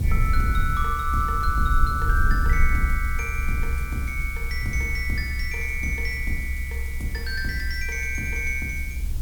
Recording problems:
hiss; slope +2 dB per octave, SNR 16 dB
low-frequency rumble; below 66 Hz, SNR 0 dB

